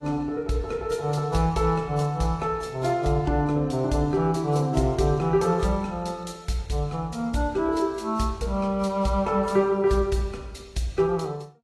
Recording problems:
lossy compression; AAC, log-spectral distance 2 dB, nothing above 12 kHz

